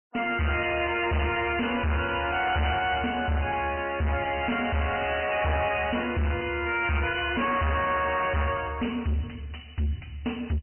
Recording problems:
treble missing; nothing above 3 kHz
lossy codec; MP3, then MP3, log-spectral distance 6 dB
distortion; soft clipping, signal-to-distortion ratio 6 dB

